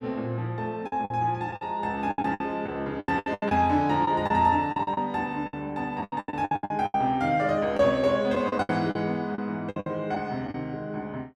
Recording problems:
lost packets; 15% of the sound replaced, filled with the last packet

